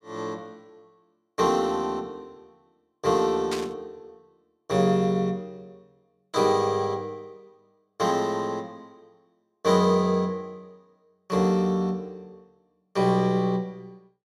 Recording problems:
static burst; at 3.5 s; peak -3 dB vs average level

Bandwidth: 15.5 kHz